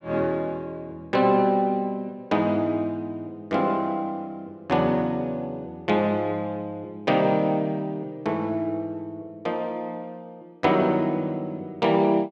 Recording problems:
none

